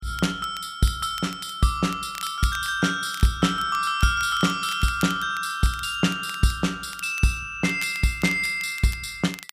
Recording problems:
crackling; vinyl, SNR 18 dB

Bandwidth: 15 kHz